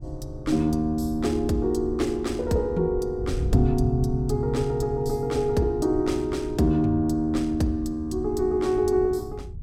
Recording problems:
wind noise; below 98 Hz, SNR 11 dB

